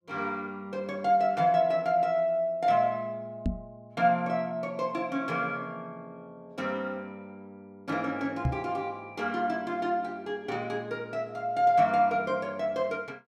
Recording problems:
knock on the microphone; at 3.5 s and at 8.5 s; peak +4 dB vs average level

